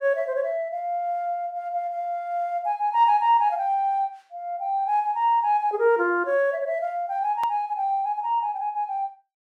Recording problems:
hard cut with a click; at 7.5 s

